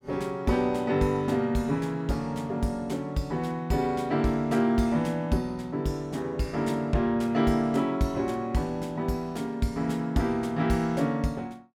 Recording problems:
none

